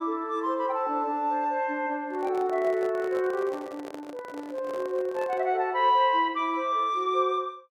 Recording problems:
microphone handling noise; from 2 to 5.5 s; peak -9 dB vs average level

